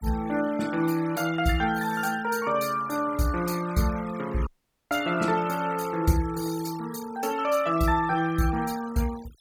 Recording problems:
noise reduction artefacts; signal-to-artefact ratio 17 dB
dropout; at 4.5 s

